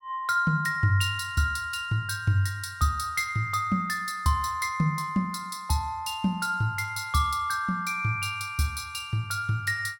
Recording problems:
none

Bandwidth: 17.5 kHz